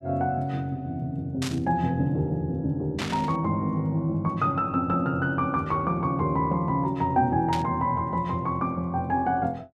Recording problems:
static burst; at 1.5 s, at 3 s and at 7.5 s; peak -2 dB vs average level

